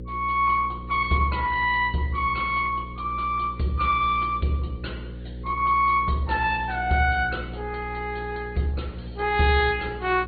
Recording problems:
treble missing; nothing above 4.4 kHz
lossy codec; Opus, log-spectral distance 3 dB
electrical hum; 60 Hz, harmonics up to 540 Hz, SNR 13 dB

